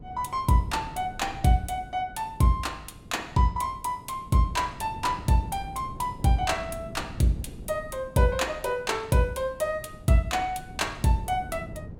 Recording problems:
wind noise; below 220 Hz, SNR 16 dB

